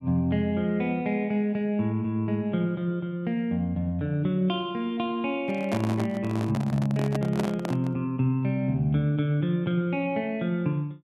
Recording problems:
microphone handling noise; from 5.5 to 8 s; peak 0 dB vs average level

